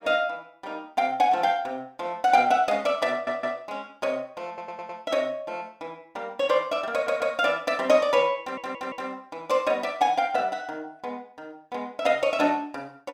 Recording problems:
stutter; 4 times, first at 3 s

